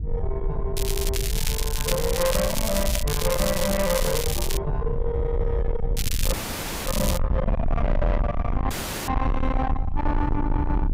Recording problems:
distortion; soft clipping, signal-to-distortion ratio 7 dB
rumble; below 96 Hz, SNR 1 dB
crackle; from 1 to 3 s, from 3 to 4.5 s and from 6 to 7 s; loose cable, SNR 3 dB
audio cutting out; at 6.5 s for 0.5 s and at 8.5 s

